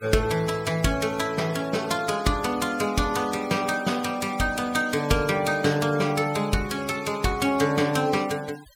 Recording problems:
noise reduction artefacts; signal-to-artefact ratio 17 dB

